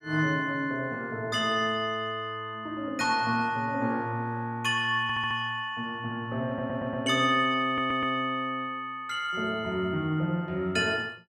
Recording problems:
stutter; at 5 s, at 6.5 s and at 7.5 s

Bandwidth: 15.5 kHz